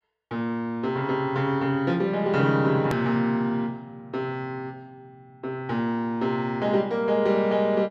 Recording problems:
edit click; at 3 s

